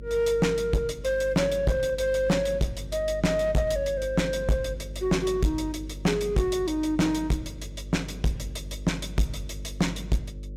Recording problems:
distorted audio; hard clipping, uneven, signal-to-distortion ratio 6 dB
hum; 50 Hz, harmonics up to 550 Hz, SNR 13 dB

